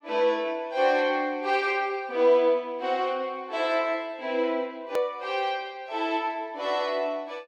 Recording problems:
click at an edit; at 5 s

